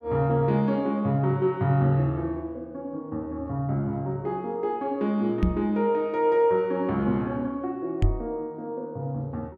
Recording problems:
microphone bump; at 5.5 s and at 8 s; peak +7 dB vs average level

